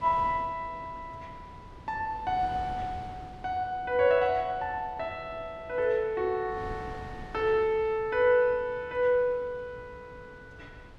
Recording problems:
wind on the microphone; below 430 Hz, SNR 19 dB

